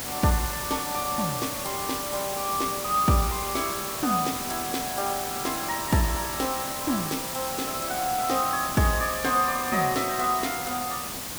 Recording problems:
hiss; slope -2 dB per octave, SNR 4 dB

